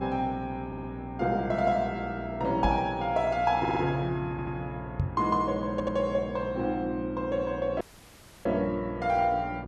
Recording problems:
hum; 60 Hz, harmonics up to 1.3 kHz, SNR 12 dB
audio stuttering; 4 times, first at 0.5 s
microphone bump; at 2.5 s and at 5 s; peak +4 dB vs average level
dropout; at 8 s for 0.5 s

